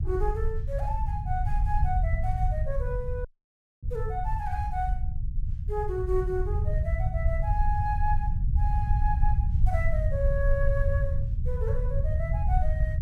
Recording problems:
low-frequency rumble; below 82 Hz, SNR -5 dB
audio cutting out; at 3.5 s for 0.5 s

